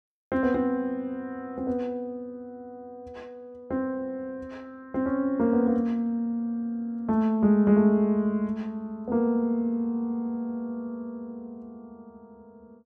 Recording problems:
none

